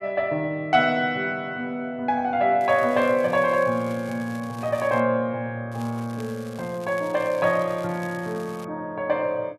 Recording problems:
crackle; from 2.5 to 5 s and from 5.5 to 8.5 s; loose cable, SNR 23 dB

